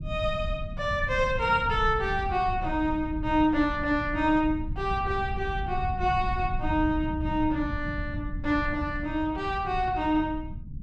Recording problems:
low-frequency rumble; below 110 Hz, SNR 8 dB

